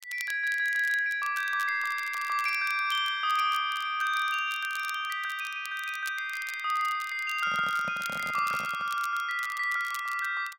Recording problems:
crackle; vinyl, SNR 18 dB
handling noise; from 7.5 to 9 s; peak -9 dB vs average level

